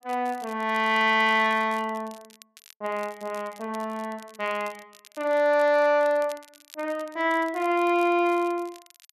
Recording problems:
crackle; vinyl, SNR 26 dB

